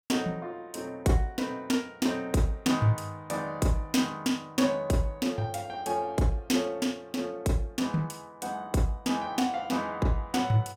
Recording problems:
none

